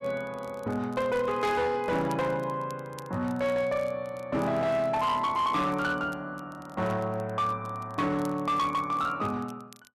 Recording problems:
distortion; hard clipping, signal-to-distortion ratio 12 dB
crackle; vinyl, SNR 27 dB

